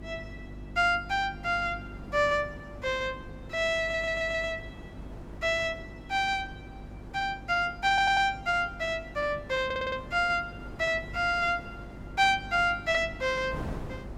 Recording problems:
electrical hum; 50 Hz, harmonics up to 350 Hz, SNR 18 dB
wind on the microphone; below 500 Hz, SNR 18 dB
stutter; at 4 s, at 8 s and at 9.5 s

